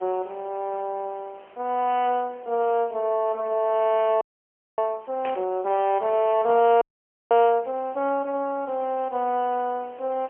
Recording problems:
telephone audio; 300 Hz to 3.1 kHz, AMR-NB, then MP3
hiss; SNR 27 dB
audio freezing; at 4 s for 0.5 s and at 7 s for 0.5 s
burst of static; at 5.5 s; peak -8 dB vs average level

